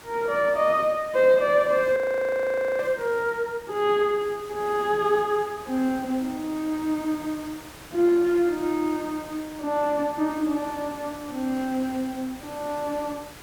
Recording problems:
hiss; slope -3 dB per octave, SNR 19 dB
audio freezing; at 2 s for 1 s

